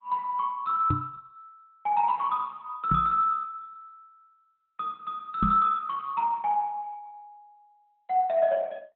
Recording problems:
codec artefacts; Opus, log-spectral distance 2 dB, nothing above 3.7 kHz
microphone thump; at 1 s, at 3 s and at 5.5 s; peak +3 dB vs average level

